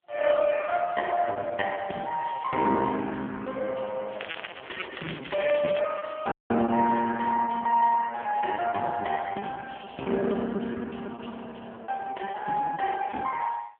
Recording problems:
phone line; 220 Hz to 3.4 kHz, AMR-NB
lost packets; 15% of the sound replaced, filled with repeated pitch periods
crackle; from 4 to 6 s; loose cable, SNR 11 dB
audio cutting out; at 6.5 s

